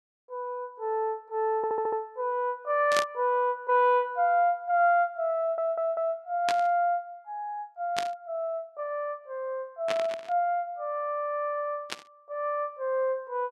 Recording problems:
stutter; at 1.5 s and at 5.5 s
burst of static; 5 times, first at 3 s; peak +2 dB vs average level

